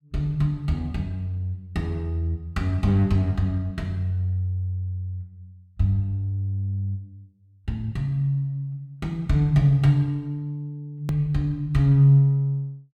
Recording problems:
click at an edit; at 11 s

